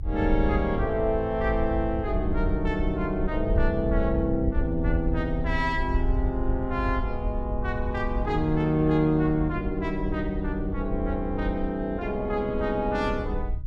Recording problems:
rumble; below 72 Hz, SNR 5 dB

